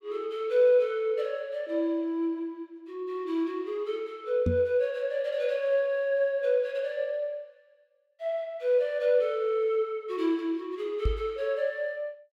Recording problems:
knock on the microphone; at 4.5 s and at 11 s; peak +4 dB vs average level

